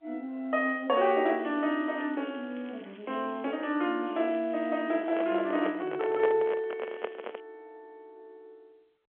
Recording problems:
phone line; 280 Hz to 3.3 kHz, G.711
crackle; from 1.5 to 3.5 s, from 4 to 6 s and at 7 s; loose cable, SNR 27 dB
microphone handling noise; from 5 to 7.5 s; peak +1 dB vs average level

